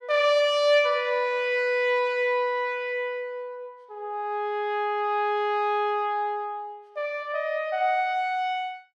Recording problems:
none

